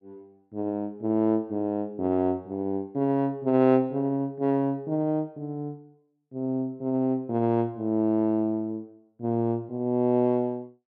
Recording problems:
none

